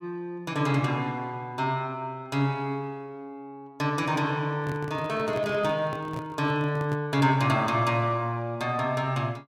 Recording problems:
handling noise; from 4.5 to 7 s; peak -4 dB vs average level

